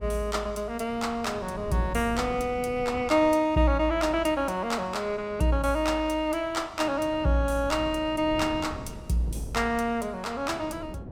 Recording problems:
wind noise; below 300 Hz, SNR 16 dB

